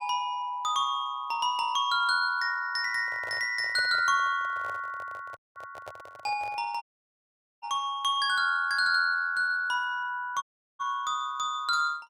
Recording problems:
handling noise; from 3 to 6.5 s; peak -11 dB vs average level
audio cutting out; at 5.5 s, at 7 s for 1 s and at 10 s

